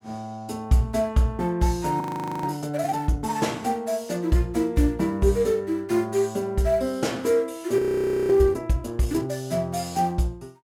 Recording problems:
frozen audio; at 2 s and at 8 s for 0.5 s

